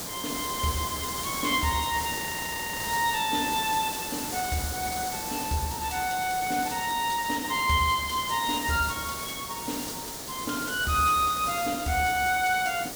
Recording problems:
hiss; SNR 5 dB
frozen audio; at 2 s for 0.5 s

